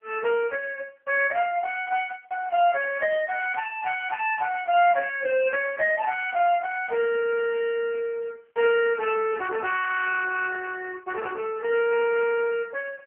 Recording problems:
telephone audio; 390 Hz to 3 kHz, AMR-NB

